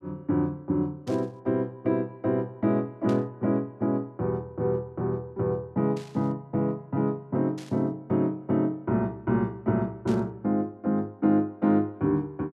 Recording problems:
static burst; 5 times, first at 1 s; peak -13 dB vs average level

